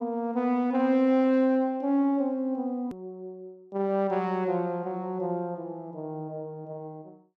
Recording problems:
hard cut with a click; at 3 s

